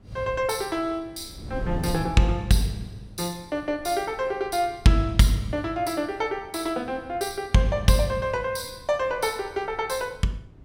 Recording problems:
wind on the microphone; below 190 Hz, SNR 17 dB

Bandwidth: 16.5 kHz